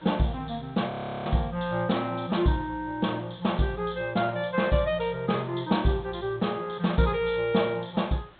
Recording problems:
low-pass filter; nothing above 4 kHz
background hiss; SNR 27 dB
audio freezing; at 1 s

